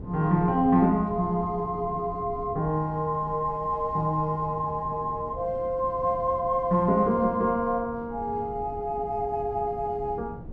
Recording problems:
wind on the microphone; below 270 Hz, SNR 16 dB

